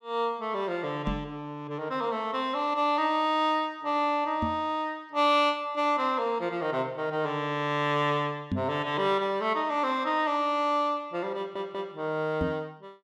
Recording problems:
knock on the microphone; 4 times, first at 1 s; peak +2 dB vs average level
stutter; at 11 s

